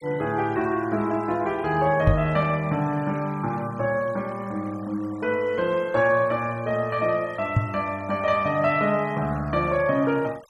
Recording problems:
denoising artefacts; signal-to-artefact ratio 24 dB
knock on the microphone; at 2 s and at 7.5 s; peak +7 dB vs average level

